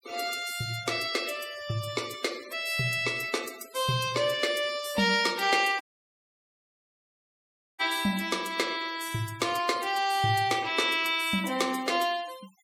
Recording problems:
denoising artefacts; signal-to-artefact ratio 18 dB
dropout; at 6 s for 2 s

